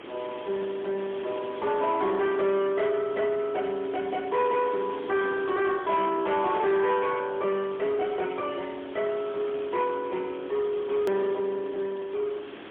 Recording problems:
phone line; 220 Hz to 3.3 kHz, AMR-NB, then MP3
distorted audio; soft clipping, signal-to-distortion ratio 11 dB
background hiss; SNR 16 dB
edit click; at 11 s

